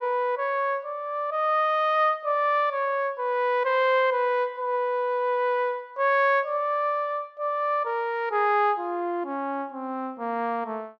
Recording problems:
none

